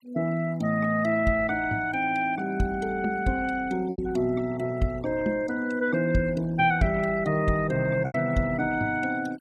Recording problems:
denoising artefacts; signal-to-artefact ratio 24 dB
packet loss; 1.9% of the sound replaced, filled with repeated pitch periods

